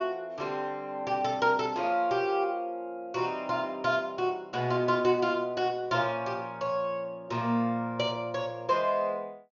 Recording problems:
treble cut off; nothing above 6.8 kHz

